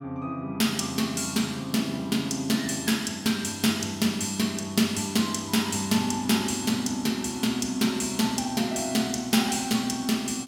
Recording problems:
none

